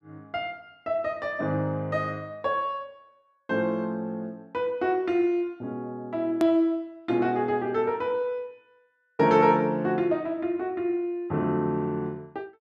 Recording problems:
click at an edit; at 6.5 s

